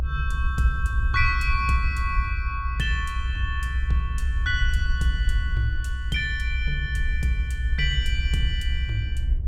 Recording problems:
low-frequency rumble; below 66 Hz, SNR -1 dB

